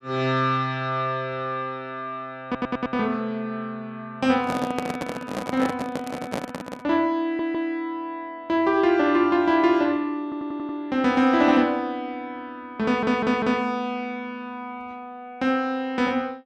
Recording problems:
stutter; 4 times, first at 2.5 s
handling noise; from 4.5 to 7 s; peak 0 dB vs average level

